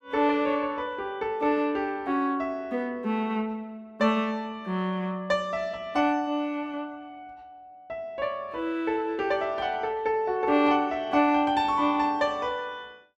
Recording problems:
none

